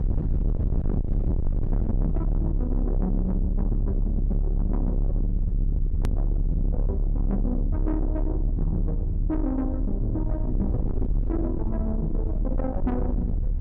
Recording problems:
distorted audio; soft clipping, signal-to-distortion ratio 6 dB
rumble; below 82 Hz, strongest tone 36 Hz, SNR -2 dB
hard cut with a click; at 6 s

